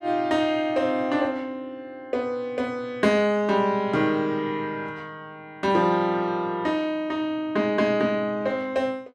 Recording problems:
none

